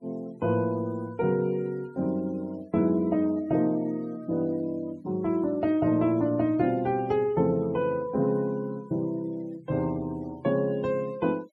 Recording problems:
noise reduction artefacts; signal-to-artefact ratio 27 dB

